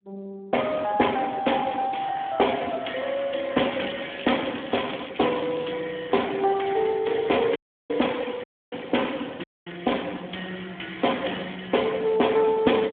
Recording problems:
phone line; 220 Hz to 3.5 kHz, Speex
crackling; from 3.5 to 5 s and at 5 s; loose cable, SNR 14 dB
dropout; at 7.5 s, at 8.5 s and at 9.5 s

